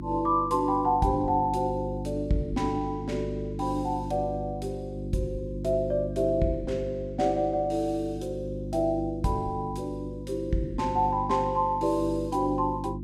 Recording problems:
hum; 50 Hz, harmonics up to 350 Hz, SNR 8 dB

